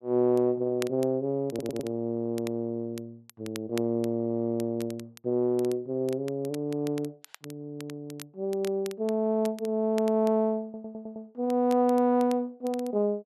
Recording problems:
crackling; vinyl, SNR 21 dB
audio stuttering; at 1.5 s and at 11 s

